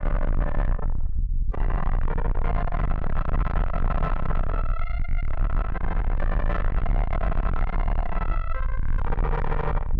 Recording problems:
distorted audio; soft clipping, signal-to-distortion ratio 6 dB
rumble; below 58 Hz, SNR -2 dB

